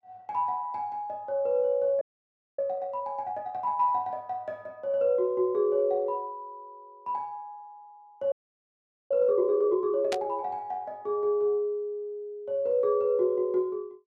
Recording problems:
audio freezing; at 2 s for 0.5 s and at 8.5 s for 1 s
burst of static; at 10 s; peak -2 dB vs average level

